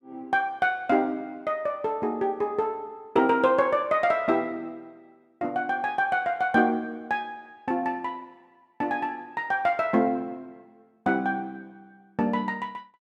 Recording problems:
none

